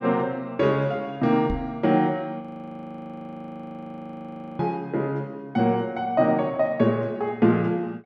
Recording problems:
knock on the microphone; at 1.5 s; peak -3 dB vs average level
audio freezing; at 2.5 s for 2 s

